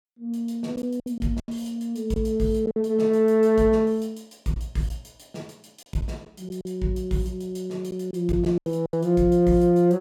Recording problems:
lost packets; 6% of the sound replaced, filled with silence

